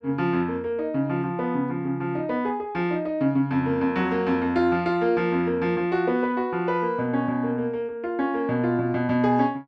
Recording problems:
none

